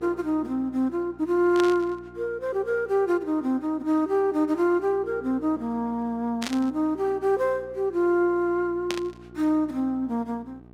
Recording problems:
electrical hum; 60 Hz, harmonics up to 1.2 kHz, SNR 24 dB
static burst; at 1.5 s, at 6.5 s and at 9 s; peak -1 dB vs average level

